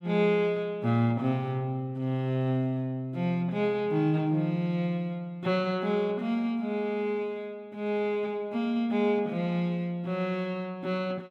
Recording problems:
none

